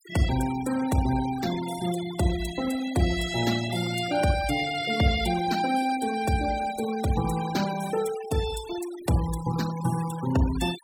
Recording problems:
noise reduction artefacts; signal-to-artefact ratio 13 dB

